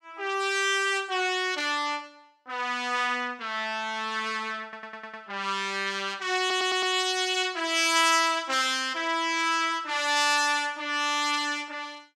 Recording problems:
stutter; at 4.5 s and at 6.5 s

